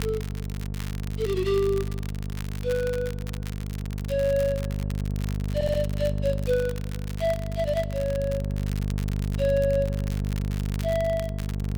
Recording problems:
mains hum; 50 Hz, harmonics up to 500 Hz, SNR 3 dB
crackling; vinyl, SNR 16 dB
stutter; at 5.5 s

